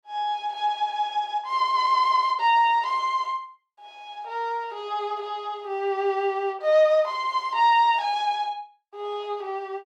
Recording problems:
none

